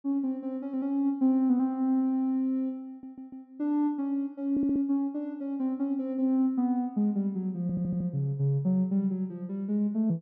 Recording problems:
stutter; at 3 s, at 4.5 s and at 7.5 s

